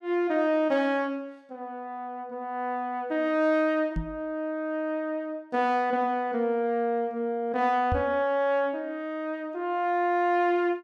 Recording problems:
microphone thump; at 4 s and at 8 s; peak +1 dB vs average level

